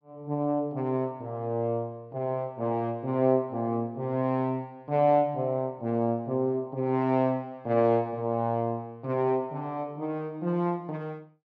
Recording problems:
none

